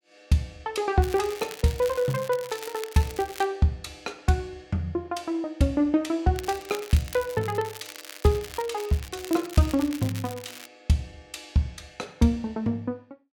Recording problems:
crackle; at 1 s, from 1.5 to 3.5 s and from 6.5 to 11 s; loose cable, SNR 15 dB

